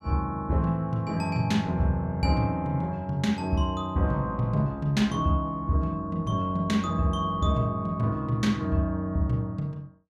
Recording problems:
none

